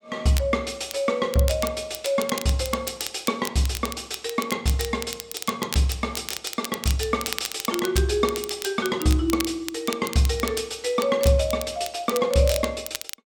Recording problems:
crackle; vinyl, SNR 9 dB

